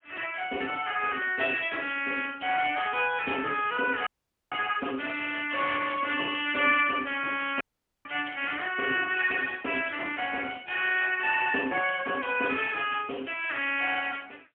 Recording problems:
phone line; 260 Hz to 3.2 kHz, AMR-NB, then MP3
audio cutting out; at 4 s and at 7.5 s

